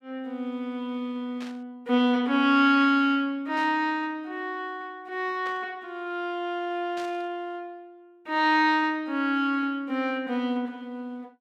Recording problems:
burst of static; 4 times, first at 1.5 s; peak -13 dB vs average level

